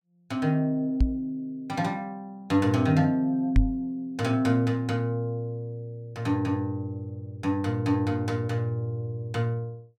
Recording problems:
microphone bump; at 1 s and at 3.5 s; peak +9 dB vs average level

